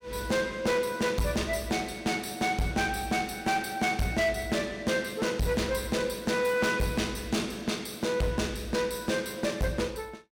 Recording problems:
distortion; hard clipping, signal-to-distortion ratio 10 dB

